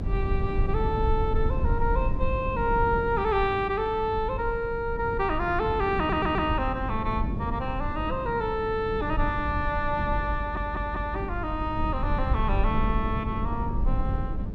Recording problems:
hum; 50 Hz, harmonics up to 1.3 kHz, SNR 15 dB
rumble; below 74 Hz, SNR 5 dB
wind noise; below 240 Hz, SNR 9 dB
audio stuttering; at 6 s and at 10 s

